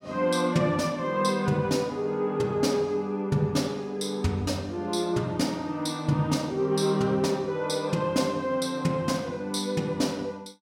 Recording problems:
none

